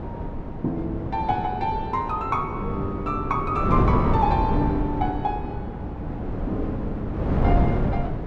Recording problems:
wind noise; below 330 Hz, SNR 0 dB

